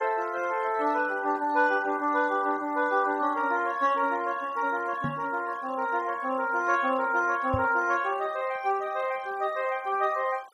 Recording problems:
denoising artefacts; signal-to-artefact ratio 23 dB
microphone thump; at 5 s and at 7.5 s; peak 0 dB vs average level

